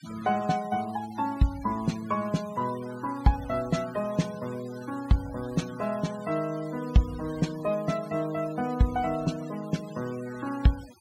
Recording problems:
denoising artefacts; signal-to-artefact ratio 18 dB

